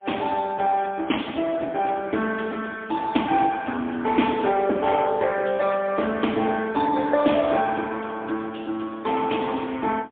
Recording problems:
telephone audio; 240 Hz to 3.5 kHz, AMR-NB, then MP3

